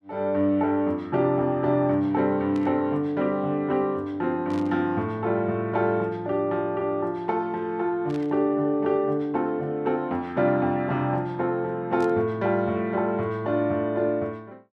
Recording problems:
static burst; 4 times, first at 2.5 s; peak -15 dB vs average level

